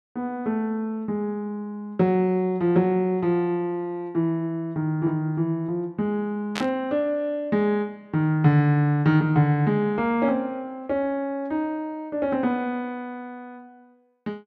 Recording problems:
static burst; at 6.5 s; peak -1 dB vs average level

